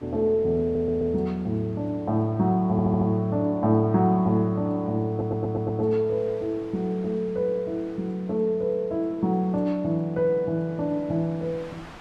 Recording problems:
wind on the microphone; below 1.9 kHz, SNR 26 dB
audio stuttering; at 0.5 s, at 2.5 s and at 5 s

